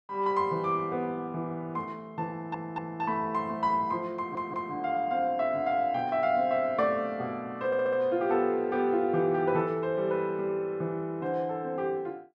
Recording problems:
audio stuttering; at 2.5 s, at 4 s and at 7.5 s

